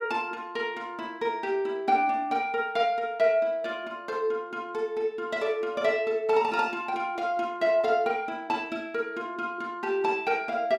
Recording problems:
none

